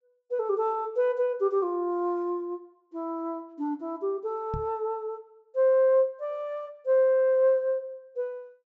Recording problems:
treble cut off; nothing above 8 kHz
microphone thump; at 4.5 s; peak -4 dB vs average level

